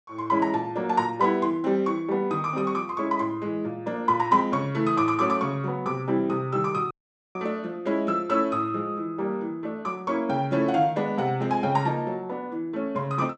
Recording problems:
audio cutting out; at 7 s

